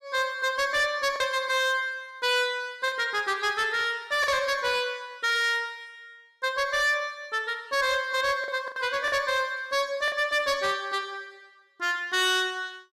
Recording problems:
distorted audio; hard clipping, signal-to-distortion ratio 11 dB
packet loss; 3% of the sound replaced, filled with the last packet

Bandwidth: 14.5 kHz